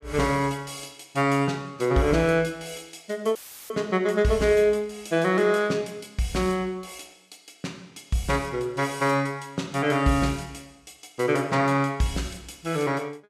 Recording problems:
dropout; at 3.5 s; filled with static

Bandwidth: 14.5 kHz